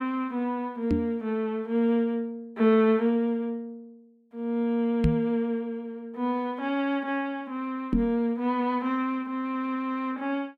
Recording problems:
knock on the microphone; at 1 s, at 5 s and at 8 s; peak +7 dB vs average level

